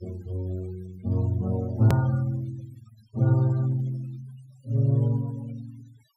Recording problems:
denoising artefacts; signal-to-artefact ratio 24 dB
edit click; at 2 s

